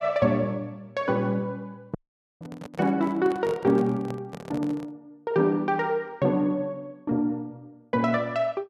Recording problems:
microphone handling noise; from 2 to 5 s; peak -7 dB vs average level
audio cutting out; at 2 s

